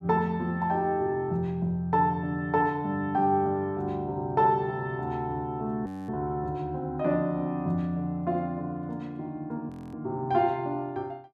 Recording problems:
audio freezing; at 6 s and at 9.5 s

